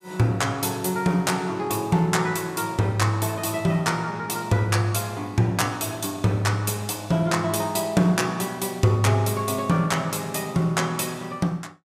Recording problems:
none

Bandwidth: 15.5 kHz